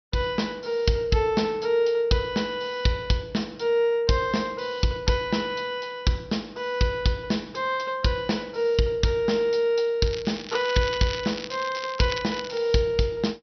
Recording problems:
treble cut off; nothing above 5.9 kHz
crackling; from 10 to 13 s; loose cable, SNR 12 dB

